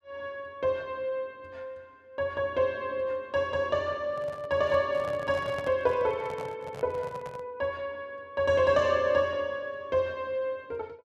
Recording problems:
microphone handling noise; from 4 to 7.5 s; peak -6 dB vs average level

